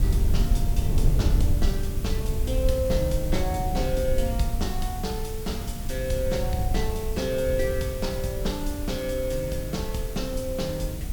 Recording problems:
background hiss; slope 0 dB per octave, SNR 11 dB
rumble; below 86 Hz, SNR 0 dB

